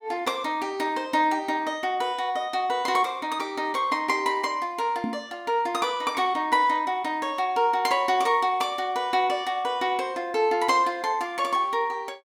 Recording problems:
microphone bump; at 5 s; peak -1 dB vs average level

